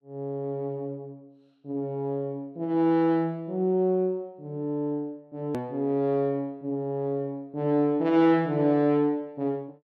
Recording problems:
edit click; at 5.5 s

